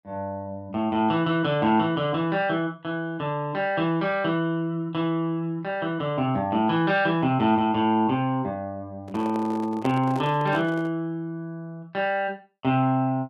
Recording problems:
microphone handling noise; from 9 to 11 s; peak -2 dB vs average level

